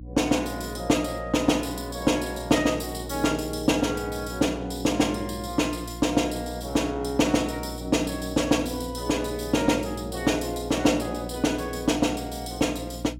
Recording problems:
mains hum; 60 Hz, harmonics up to 300 Hz, SNR 14 dB

